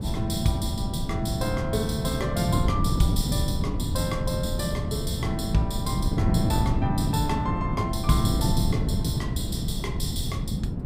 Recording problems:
wind on the microphone; below 190 Hz, SNR -1 dB

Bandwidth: 15.5 kHz